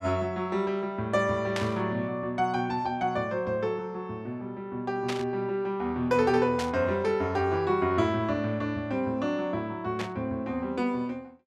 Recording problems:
static burst; 4 times, first at 1.5 s; peak 0 dB vs average level

